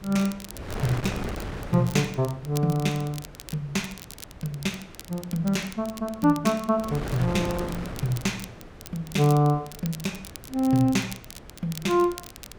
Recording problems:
wind noise; below 750 Hz, SNR 13 dB
crackle; vinyl, SNR 17 dB

